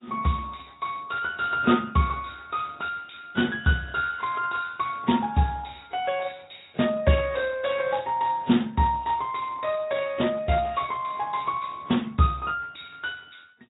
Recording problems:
treble missing; nothing above 3.8 kHz
lossy compression; AAC, then Speex, log-spectral distance 9 dB

